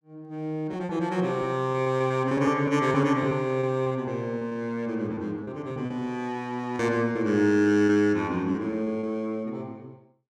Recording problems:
lost packets; 8% of the sound replaced, filled with repeated pitch periods

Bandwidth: 14.5 kHz